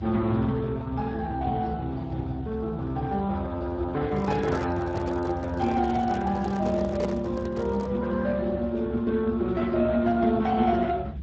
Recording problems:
codec artefacts; Speex, log-spectral distance 3 dB
low-frequency rumble; below 150 Hz, strongest tone 68 Hz, SNR 11 dB
microphone handling noise; from 4 to 8 s; peak -2 dB vs average level

